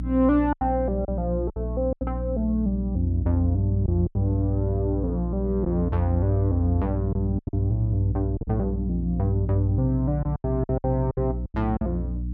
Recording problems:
mains hum; 60 Hz, harmonics up to 300 Hz, SNR 5 dB
packet loss; 8% of the sound replaced, filled with silence

